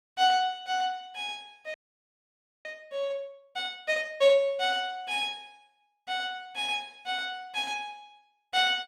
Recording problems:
frozen audio; at 1.5 s for 1 s

